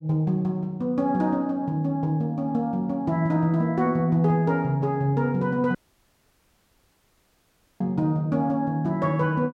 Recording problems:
dropout; at 6 s for 2 s

